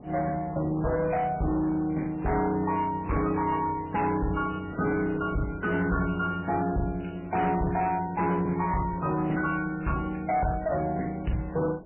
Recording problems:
codec artefacts; MP3, log-spectral distance 4 dB, nothing above 2.5 kHz
distortion; hard clipping, signal-to-distortion ratio 10 dB
wind noise; below 520 Hz, SNR 18 dB

